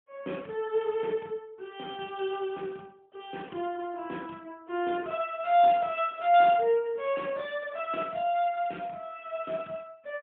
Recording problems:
telephone audio; 220 Hz to 3.5 kHz, AMR-NB, then MP3

